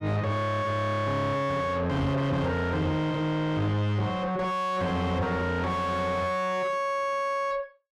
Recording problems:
distortion; soft clipping, signal-to-distortion ratio 4 dB

